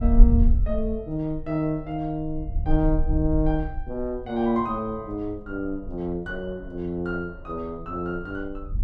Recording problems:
wind on the microphone; below 50 Hz, SNR -2 dB

